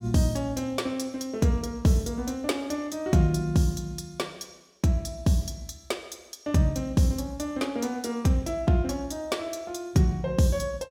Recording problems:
none

